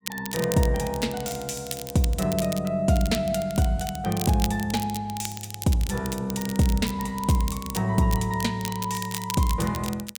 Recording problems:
crackling; vinyl, SNR 11 dB

